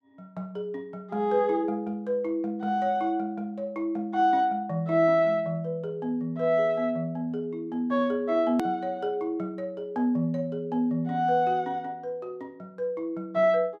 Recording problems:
edit click; at 8.5 s

